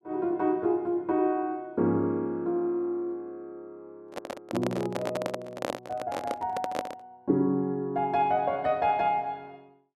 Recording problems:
microphone handling noise; from 4 to 7 s; peak +1 dB vs average level

